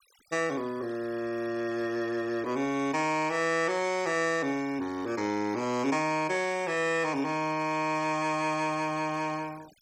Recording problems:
denoising artefacts; signal-to-artefact ratio 21 dB

